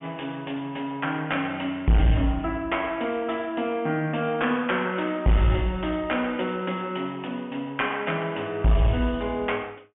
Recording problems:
treble cut off; nothing above 3.3 kHz
distortion; hard clipping, uneven, signal-to-distortion ratio 9 dB

